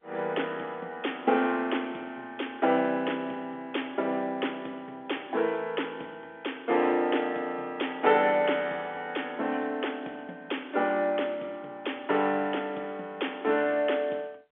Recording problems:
telephone audio; 220 Hz to 3.5 kHz, G.711

